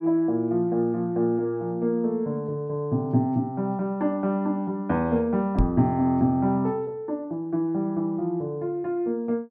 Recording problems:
microphone thump; at 5.5 s; peak +5 dB vs average level

